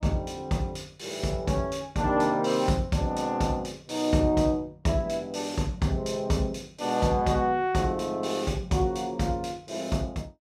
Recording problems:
none

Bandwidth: 14 kHz